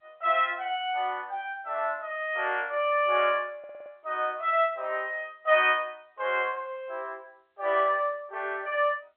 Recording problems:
phone line; 320 Hz to 3.5 kHz, G.711
stutter; at 3.5 s

